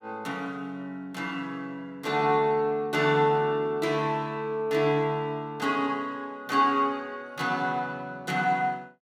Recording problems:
none

